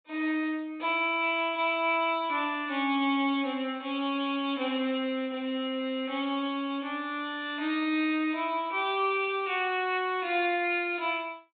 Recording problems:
low-pass filter; nothing above 4 kHz

